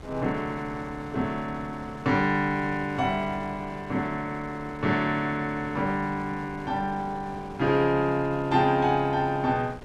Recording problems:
wind noise; below 840 Hz, SNR 17 dB

